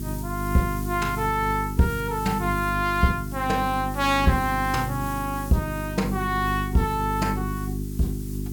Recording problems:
hum; 50 Hz, harmonics up to 400 Hz, SNR 6 dB
background hiss; slope +1 dB per octave, SNR 16 dB

